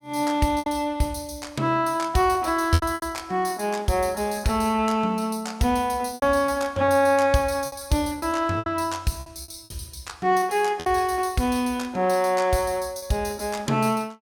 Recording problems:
lost packets; 7% of the sound replaced, filled with repeated pitch periods

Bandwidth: 18 kHz